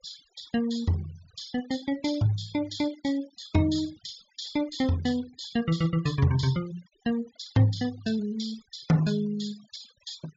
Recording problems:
low-pass filter; nothing above 7.1 kHz
denoising artefacts; signal-to-artefact ratio 20 dB

